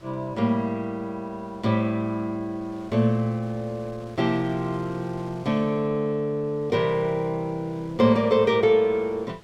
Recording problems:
wind on the microphone; below 1.5 kHz, SNR 24 dB

